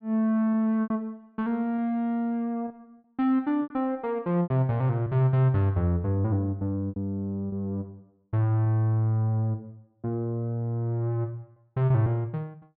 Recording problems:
low-pass filter; nothing above 4.8 kHz
lost packets; 5% of the sound replaced, filled with repeated pitch periods

